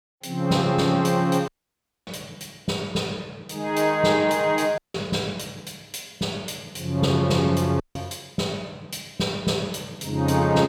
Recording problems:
audio cutting out; at 1.5 s for 0.5 s, at 5 s and at 8 s

